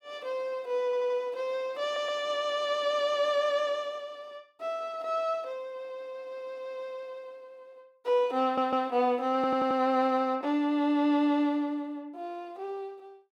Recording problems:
audio stuttering; 4 times, first at 1 s

